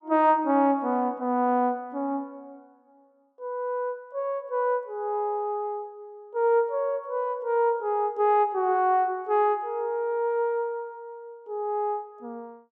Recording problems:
none

